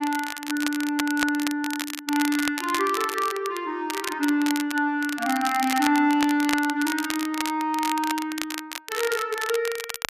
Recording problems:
crackle; vinyl, SNR 8 dB

